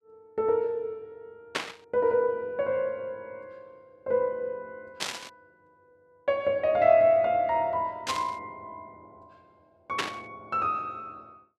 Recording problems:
burst of static; 4 times, first at 1.5 s; peak +3 dB vs average level

